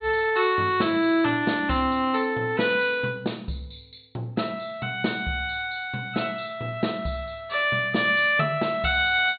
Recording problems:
treble cut off; nothing above 4.3 kHz

